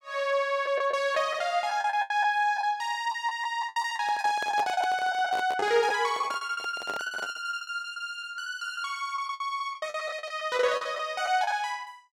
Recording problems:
lost packets; 13% of the sound replaced, filled with the last packet
handling noise; from 4 to 7.5 s; peak -3 dB vs average level

